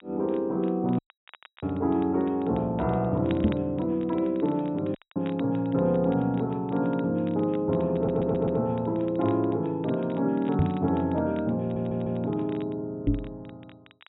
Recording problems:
low-pass filter; nothing above 3.9 kHz
crackle; vinyl, SNR 26 dB
dropout; at 1 s for 0.5 s and at 5 s
microphone thump; at 3.5 s, at 11 s and at 13 s; peak +7 dB vs average level
audio stuttering; at 8 s and at 12 s

